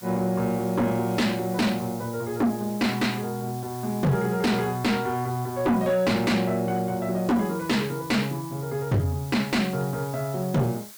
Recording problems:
distorted audio; soft clipping, signal-to-distortion ratio 8 dB
background hiss; slope 0 dB per octave, SNR 17 dB

